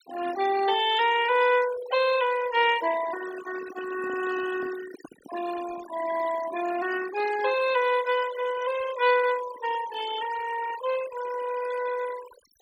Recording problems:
denoising artefacts; signal-to-artefact ratio 11 dB
microphone handling noise; from 3.5 to 5.5 s; peak -13 dB vs average level

